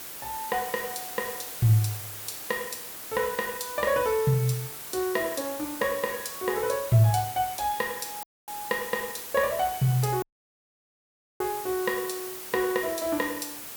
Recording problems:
hiss; slope -2 dB per octave, SNR 8 dB
dropout; at 8 s and at 10 s for 1 s

